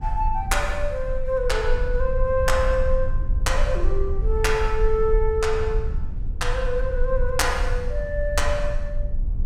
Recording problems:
low-frequency rumble; below 50 Hz, strongest tone 20 Hz, SNR 3 dB

